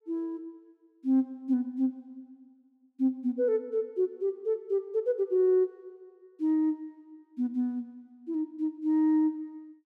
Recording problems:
none

